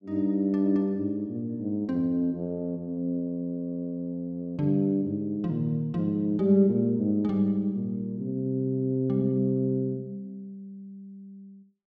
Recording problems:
none

